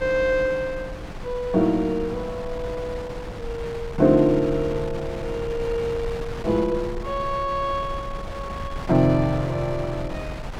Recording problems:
wind noise; below 420 Hz, SNR 11 dB

